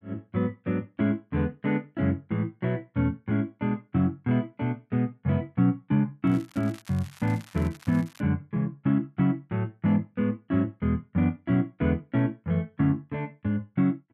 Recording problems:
crackle; from 6.5 to 8 s; loose cable, SNR 23 dB

